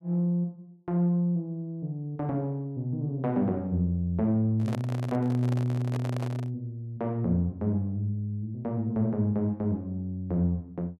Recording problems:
handling noise; from 4.5 to 6.5 s; peak -4 dB vs average level

